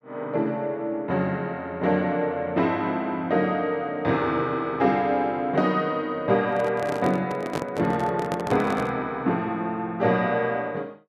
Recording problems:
microphone handling noise; from 6.5 to 9 s; peak 0 dB vs average level

